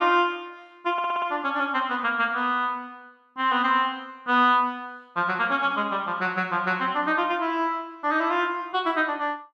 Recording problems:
audio stuttering; at 1 s

